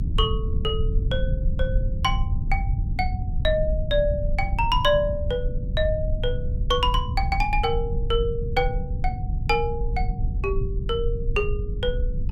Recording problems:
low-frequency rumble; below 86 Hz, SNR 1 dB

